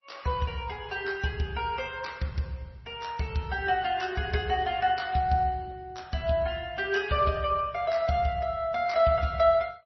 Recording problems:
lossy compression; Opus, then MP3, log-spectral distance 3 dB, nothing above 5.8 kHz

